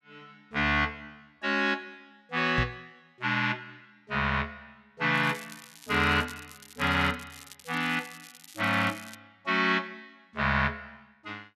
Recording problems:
microphone thump; at 2.5 s; peak +1 dB vs average level
crackle; from 5 to 9 s; loose cable, SNR 20 dB

